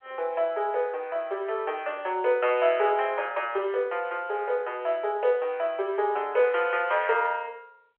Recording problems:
phone line; 340 Hz to 3.3 kHz, G.711

